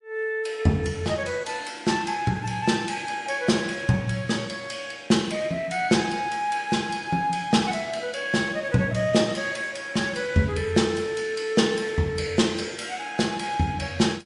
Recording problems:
codec artefacts; MP3, log-spectral distance 3 dB, nothing above 10.7 kHz

